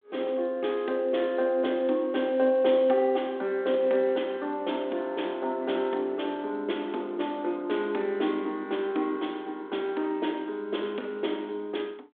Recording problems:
telephone audio; 220 Hz to 3.6 kHz, G.726

